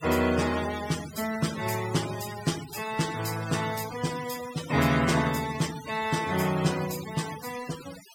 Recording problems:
noise reduction artefacts; signal-to-artefact ratio 11 dB

